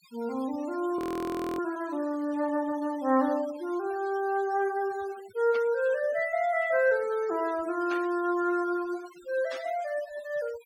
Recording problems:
denoising artefacts; signal-to-artefact ratio 21 dB
audio freezing; at 1 s for 0.5 s
burst of static; at 5.5 s, at 8 s and at 9.5 s; peak -8 dB vs average level

